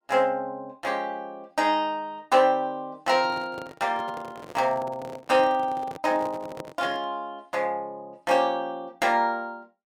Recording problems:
handling noise; from 3 to 7 s; peak -7 dB vs average level

